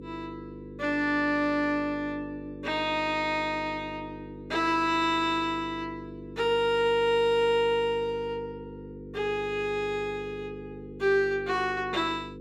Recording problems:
hum; 50 Hz, harmonics up to 500 Hz, SNR 15 dB

